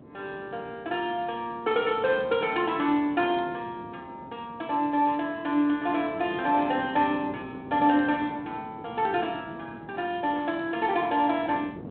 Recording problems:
phone line; 190 Hz to 3.6 kHz, G.726
wind on the microphone; below 450 Hz, SNR 17 dB

